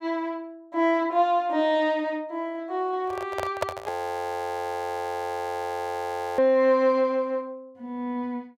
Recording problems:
microphone handling noise; from 3 to 6.5 s; peak +3 dB vs average level
audio freezing; at 4 s for 2.5 s

